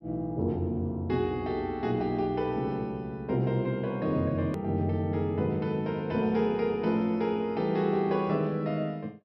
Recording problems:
low-pass filter; nothing above 5.7 kHz
click at an edit; at 4.5 s

